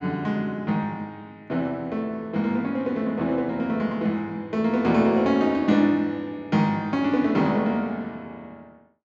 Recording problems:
treble cut off; nothing above 8 kHz

